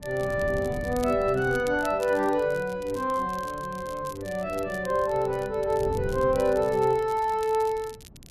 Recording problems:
wind on the microphone; below 210 Hz, SNR 15 dB
crackling; vinyl, SNR 22 dB

